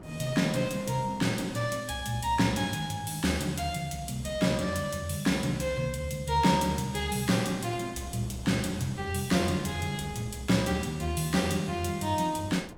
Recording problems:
wind on the microphone; below 530 Hz, SNR 21 dB

